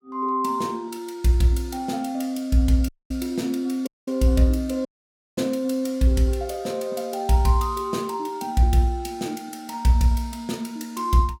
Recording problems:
audio cutting out; at 3 s, at 4 s and at 5 s for 0.5 s

